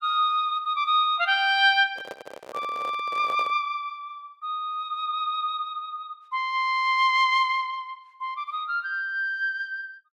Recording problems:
microphone handling noise; from 2 to 3.5 s; peak -9 dB vs average level

